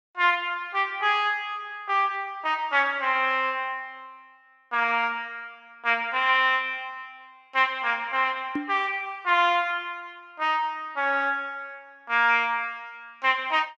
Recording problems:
knock on the microphone; at 8.5 s; peak -1 dB vs average level

